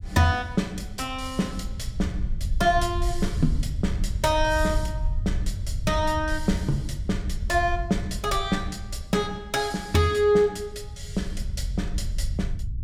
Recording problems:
rumble; below 78 Hz, SNR 6 dB

